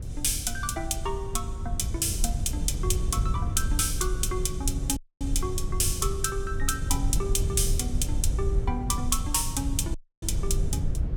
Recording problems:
rumble; below 90 Hz, SNR 2 dB
audio cutting out; at 5 s and at 10 s

